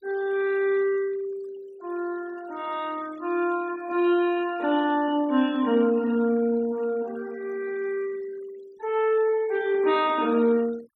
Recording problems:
noise reduction artefacts; signal-to-artefact ratio 23 dB

